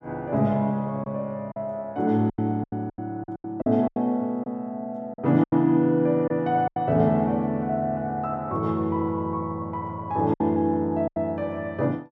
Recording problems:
lost packets; 8% of the sound replaced, filled with silence

